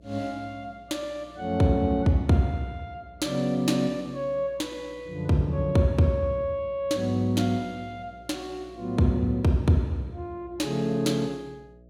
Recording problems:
hum; 60 Hz, harmonics up to 660 Hz, SNR 26 dB

